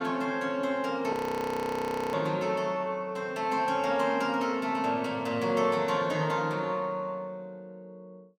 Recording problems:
audio freezing; at 1 s for 1 s

